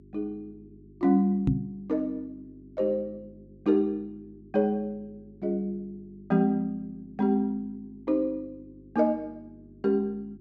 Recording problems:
hum; 50 Hz, harmonics up to 400 Hz, SNR 25 dB
knock on the microphone; at 1.5 s; peak +7 dB vs average level

